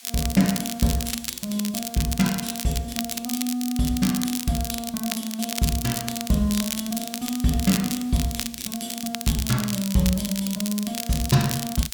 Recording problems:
hiss; slope +3 dB per octave, SNR 20 dB
crackle; vinyl, SNR 5 dB

